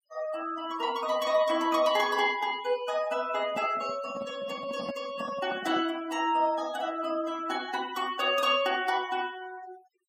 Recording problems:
denoising artefacts; signal-to-artefact ratio 18 dB
microphone handling noise; from 3.5 to 6 s; peak -5 dB vs average level

